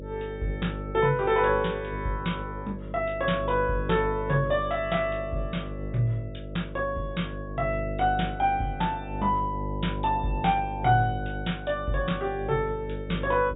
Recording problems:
low-pass filter; nothing above 4 kHz
hum; 50 Hz, harmonics up to 600 Hz, SNR 8 dB

